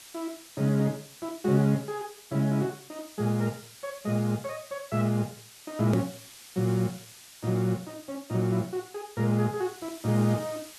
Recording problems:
hiss; slope +2 dB per octave, SNR 18 dB
hard cut with a click; at 6 s

